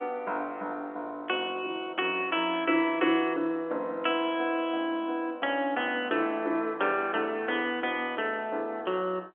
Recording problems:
telephone audio; 260 Hz to 3.4 kHz, G.711

